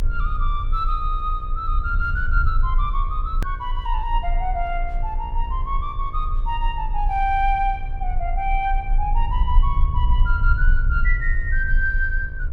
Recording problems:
hum; 60 Hz, harmonics up to 2.4 kHz, SNR 23 dB
low-frequency rumble; below 46 Hz, strongest tone 26 Hz, SNR -1 dB
hard cut with a click; at 3.5 s

